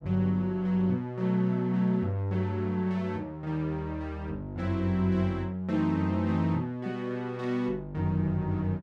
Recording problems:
none

